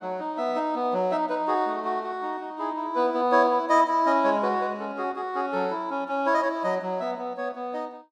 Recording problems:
none

